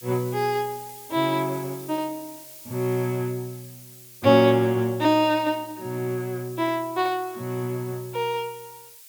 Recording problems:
background hiss; SNR 18 dB

